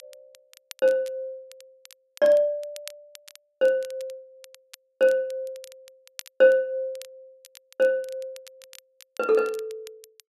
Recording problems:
crackle; vinyl, SNR 24 dB

